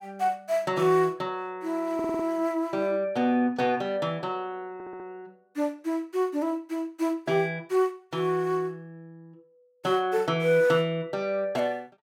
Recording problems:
stutter; at 2 s and at 4.5 s

